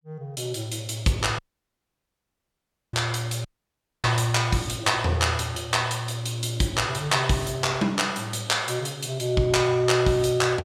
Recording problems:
audio cutting out; at 1.5 s for 1.5 s and at 3.5 s for 0.5 s

